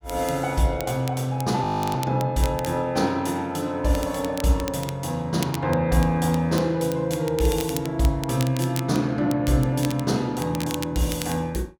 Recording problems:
crackle; vinyl, SNR 15 dB
audio freezing; at 1.5 s

